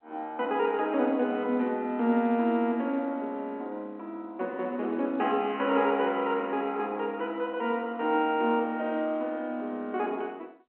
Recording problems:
phone line; 190 Hz to 3.3 kHz, G.711

